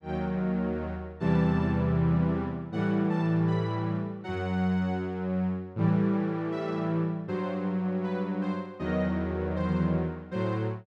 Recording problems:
none

